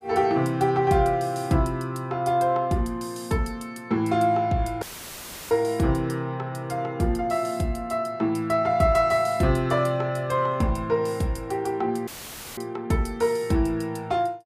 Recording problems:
dropout; at 5 s for 0.5 s and at 12 s for 0.5 s; filled with static

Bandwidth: 15 kHz